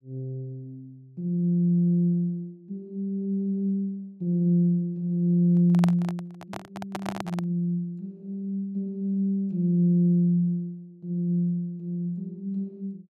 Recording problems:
microphone handling noise; from 5.5 to 7.5 s; peak -1 dB vs average level

